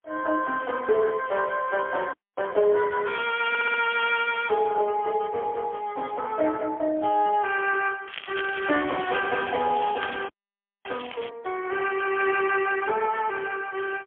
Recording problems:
telephone audio; 280 Hz to 3.3 kHz, AMR-NB, then MP3
audio freezing; at 2 s and at 10 s for 0.5 s
audio stuttering; at 3.5 s
crackling; from 8 to 11 s; loose cable, SNR 14 dB

